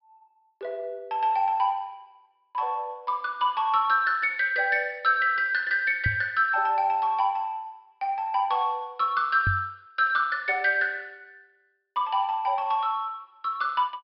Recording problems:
low-pass filter; nothing above 5.3 kHz
microphone thump; at 6 s and at 9.5 s; peak +1 dB vs average level

